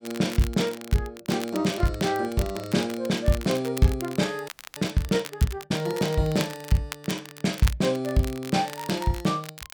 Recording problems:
crackle; vinyl, SNR 14 dB
frozen audio; at 4.5 s

